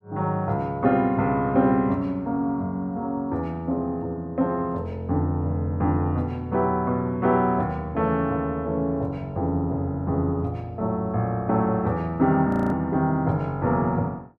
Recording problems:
frozen audio; at 12 s

